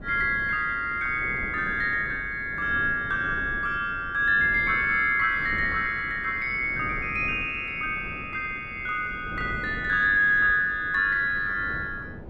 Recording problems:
wind noise; below 360 Hz, SNR 16 dB

